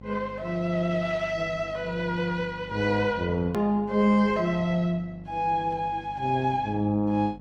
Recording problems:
lossy codec; Opus, log-spectral distance 2 dB, nothing above 18.3 kHz
electrical hum; 50 Hz, harmonics up to 850 Hz, SNR 19 dB
click at an edit; at 3.5 s

